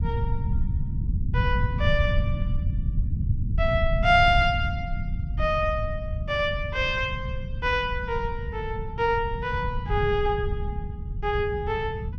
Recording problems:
rumble; below 110 Hz, SNR 3 dB

